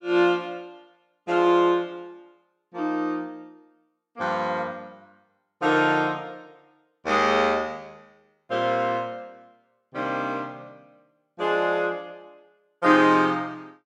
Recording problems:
none

